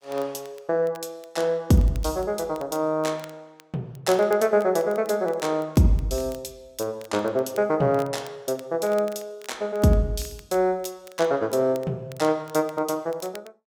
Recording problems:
crackling; vinyl, SNR 26 dB

